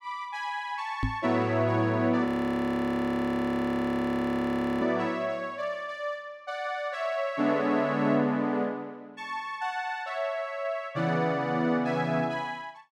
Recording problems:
microphone bump; at 1 s; peak +3 dB vs average level
frozen audio; at 2.5 s for 2.5 s

